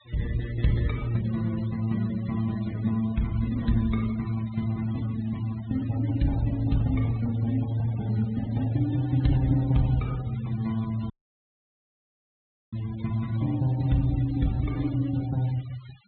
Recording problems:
low-pass filter; nothing above 4.2 kHz
denoising artefacts; signal-to-artefact ratio 22 dB
dropout; at 11 s for 1.5 s

